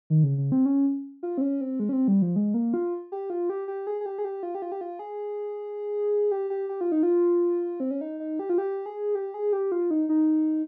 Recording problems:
none

